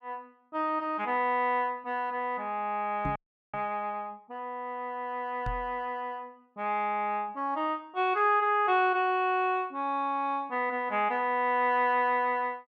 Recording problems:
knock on the microphone; at 3 s and at 5.5 s; peak -3 dB vs average level
audio freezing; at 3 s

